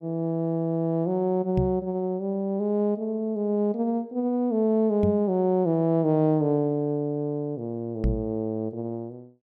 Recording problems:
microphone thump; at 1.5 s, at 5 s and at 8 s; peak +4 dB vs average level

